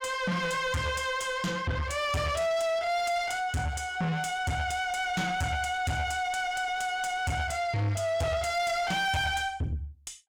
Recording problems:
distorted audio; soft clipping, signal-to-distortion ratio 6 dB

